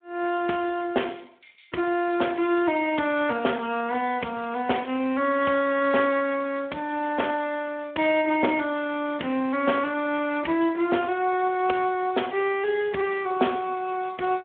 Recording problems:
telephone audio; 260 Hz to 3.4 kHz, Speex

